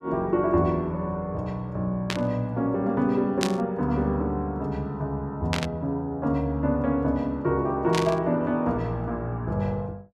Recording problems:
burst of static; 4 times, first at 2 s; peak +3 dB vs average level

